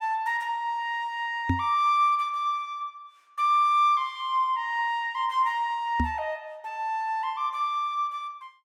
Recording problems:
microphone thump; at 1.5 s and at 6 s; peak +4 dB vs average level

